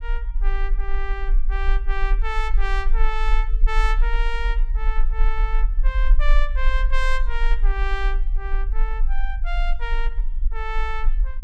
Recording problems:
low-frequency rumble; below 36 Hz, strongest tone 20 Hz, SNR -6 dB

